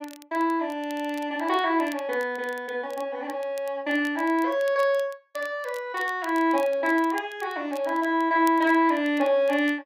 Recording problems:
crackle; vinyl, SNR 24 dB

